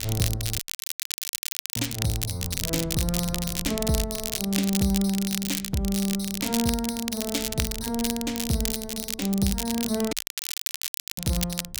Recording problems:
wind noise; below 120 Hz, SNR 16 dB
crackling; vinyl, SNR 2 dB
dropout; at 0.5 s for 1 s and at 10 s for 1 s

